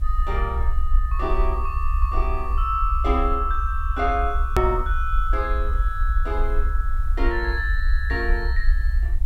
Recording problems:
background hiss; slope -5 dB per octave, SNR 29 dB
low-frequency rumble; below 60 Hz, SNR -1 dB
hard cut with a click; at 4.5 s

